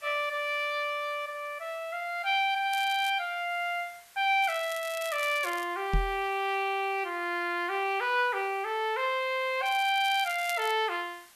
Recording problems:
background hiss; SNR 26 dB
crackling; at 2.5 s, from 4.5 to 5.5 s and from 9.5 to 11 s; loose cable, SNR 15 dB
knock on the microphone; at 6 s; peak +3 dB vs average level

